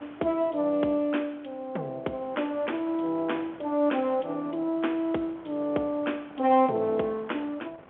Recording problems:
telephone audio; 240 Hz to 3.4 kHz, G.711
wind on the microphone; below 1.2 kHz, SNR 23 dB

